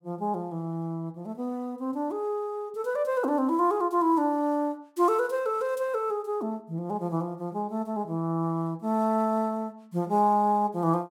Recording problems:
none

